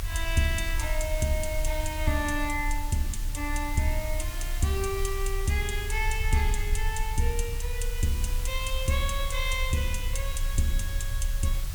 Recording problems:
hiss; slope 0 dB per octave, SNR 10 dB
low-frequency rumble; below 48 Hz, strongest tone 32 Hz, SNR 3 dB

